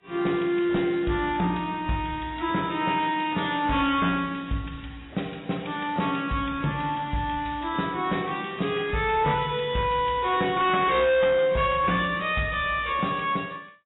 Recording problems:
lossy codec; AAC, log-spectral distance 5 dB, nothing above 3.8 kHz
distortion; hard clipping, signal-to-distortion ratio 10 dB

